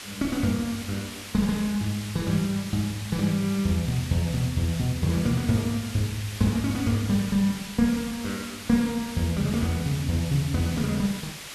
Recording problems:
background hiss; slope 0 dB per octave, SNR 11 dB

